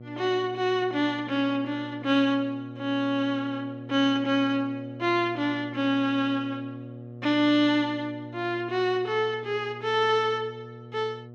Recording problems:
hum; 60 Hz, harmonics up to 720 Hz, SNR 16 dB

